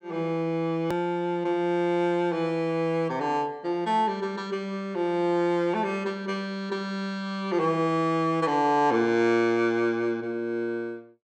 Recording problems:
click at an edit; at 1 s

